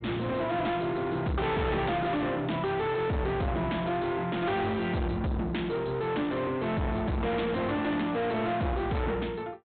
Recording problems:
low-pass filter; nothing above 4 kHz
distorted audio; soft clipping, signal-to-distortion ratio 6 dB

